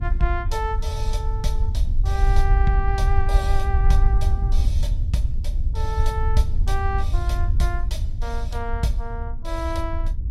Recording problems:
low-frequency rumble; below 68 Hz, SNR -5 dB

